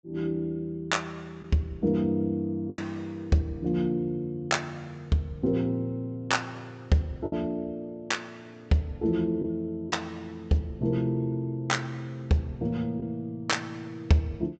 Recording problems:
treble cut off; nothing above 8 kHz
packet loss; 1.5% of the sound replaced, filled with the last packet

